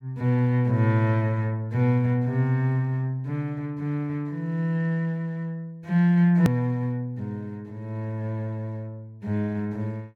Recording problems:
click at an edit; at 6.5 s

